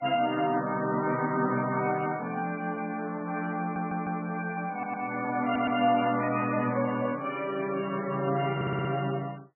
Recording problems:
codec artefacts; MP3, log-spectral distance 3 dB, nothing above 2.4 kHz
stutter; 4 times, first at 3.5 s

